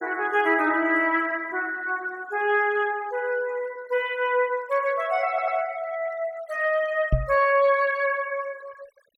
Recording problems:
noise reduction artefacts; signal-to-artefact ratio 23 dB
stutter; at 5.5 s
knock on the microphone; at 7 s; peak +5 dB vs average level

